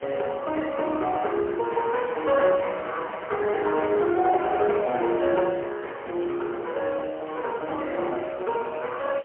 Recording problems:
telephone audio; 260 Hz to 3.3 kHz, AMR-NB, then MP3
hiss; SNR 27 dB

